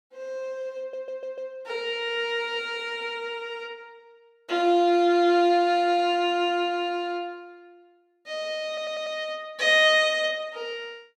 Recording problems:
audio stuttering; at 1 s and at 8.5 s

